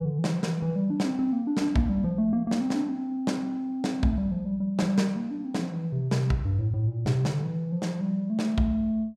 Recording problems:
none

